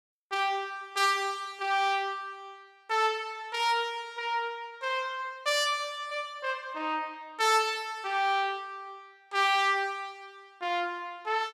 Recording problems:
none

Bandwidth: 14.5 kHz